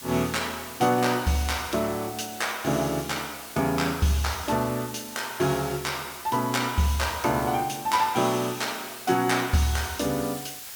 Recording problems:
hiss; slope +2 dB per octave, SNR 13 dB

